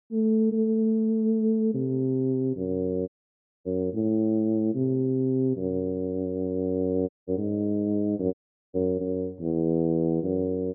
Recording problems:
dropout; at 3 s for 0.5 s, at 7 s and at 8.5 s

